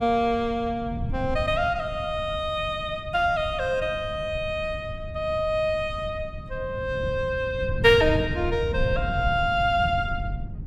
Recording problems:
wind on the microphone; below 130 Hz, SNR 9 dB

